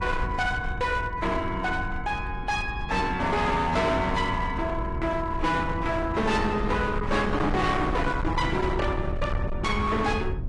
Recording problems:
lossy codec; AAC, log-spectral distance 2 dB, nothing above 10.4 kHz
distorted audio; hard clipping, uneven, signal-to-distortion ratio 8 dB
rumble; below 160 Hz, SNR 6 dB

